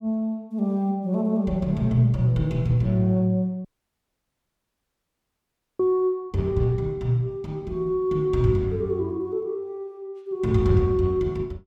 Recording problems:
dropout; at 3.5 s for 2 s

